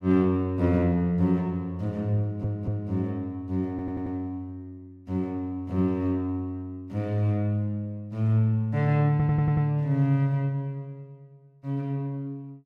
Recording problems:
audio stuttering; at 2 s, at 3.5 s and at 9 s

